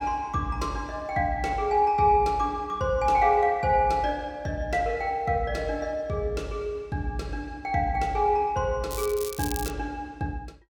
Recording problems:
crackling; at 9 s; loose cable, SNR 10 dB

